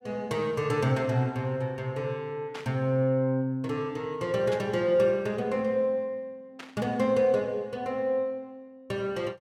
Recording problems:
burst of static; at 2.5 s, at 4.5 s and at 6.5 s; peak -8 dB vs average level

